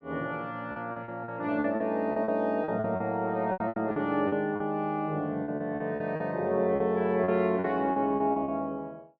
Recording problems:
lost packets; 13% of the sound replaced, filled with repeated pitch periods

